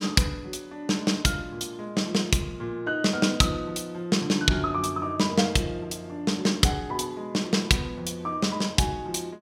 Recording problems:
none

